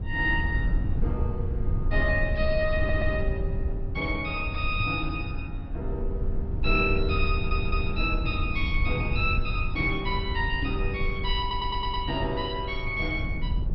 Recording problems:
lossy compression; MP2, log-spectral distance 2 dB, nothing above 5 kHz
low-frequency rumble; below 86 Hz, SNR 2 dB
audio stuttering; at 3 s, at 7.5 s and at 11 s
microphone bump; at 5 s and at 11 s; peak +2 dB vs average level

